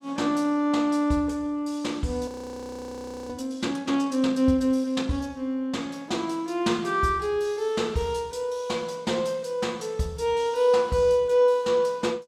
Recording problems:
audio freezing; at 2.5 s for 1 s

